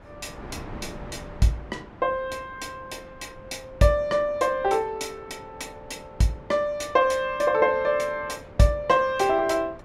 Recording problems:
wind noise; below 770 Hz, SNR 21 dB

